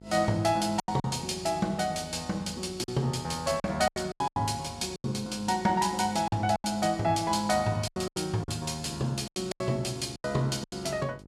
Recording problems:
hum; 50 Hz, harmonics up to 900 Hz, SNR 21 dB
lost packets; 10% of the sound replaced, filled with silence

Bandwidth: 14.5 kHz